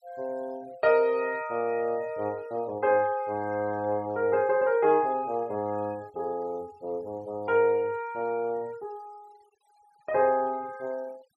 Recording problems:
denoising artefacts; signal-to-artefact ratio 27 dB

